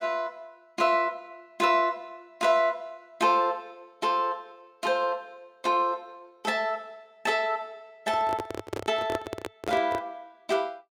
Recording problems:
microphone handling noise; from 8 to 10 s; peak 0 dB vs average level

